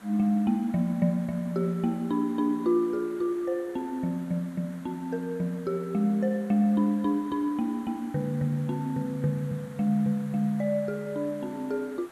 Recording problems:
hiss; SNR 23 dB

